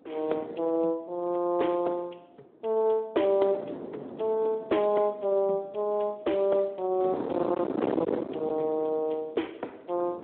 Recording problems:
phone line; 260 Hz to 3.3 kHz, Speex
distorted audio; hard clipping, signal-to-distortion ratio 12 dB
wind noise; below 580 Hz, SNR 7 dB

